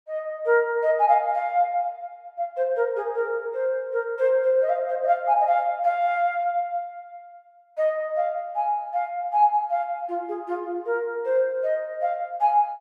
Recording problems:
none

